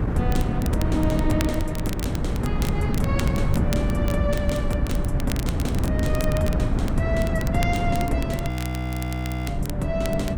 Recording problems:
hum; 60 Hz, harmonics up to 600 Hz, SNR 9 dB
low-frequency rumble; below 64 Hz, SNR 7 dB
wind on the microphone; below 230 Hz, SNR -2 dB
crackling; vinyl, SNR 11 dB
audio freezing; at 8.5 s for 1 s

